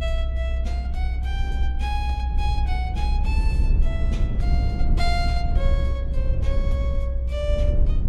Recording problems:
rumble; below 64 Hz, SNR -8 dB

